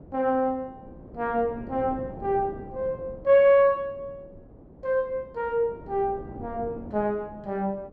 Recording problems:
wind on the microphone; below 420 Hz, SNR 18 dB

